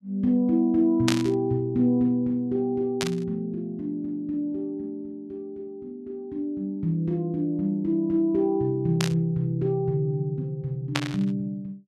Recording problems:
static burst; 4 times, first at 1 s; peak +4 dB vs average level

